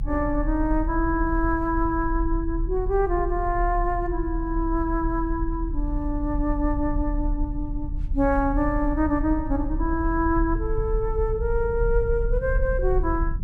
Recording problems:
rumble; below 52 Hz, strongest tone 36 Hz, SNR 4 dB

